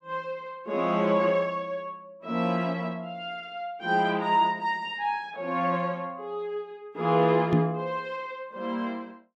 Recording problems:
microphone thump; at 7.5 s; peak +7 dB vs average level

